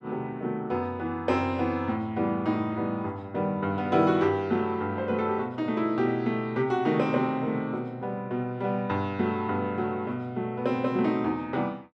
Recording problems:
none

